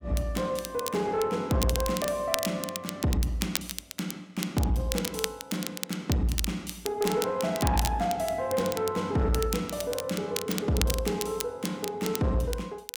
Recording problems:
distortion; soft clipping, signal-to-distortion ratio 12 dB
crackle; vinyl, SNR 7 dB

